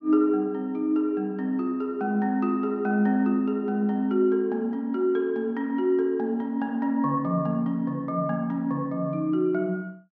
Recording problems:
treble missing; nothing above 6.5 kHz

